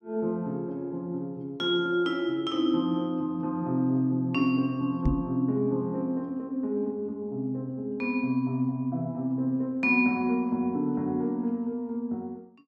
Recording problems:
microphone thump; at 5 s; peak +5 dB vs average level

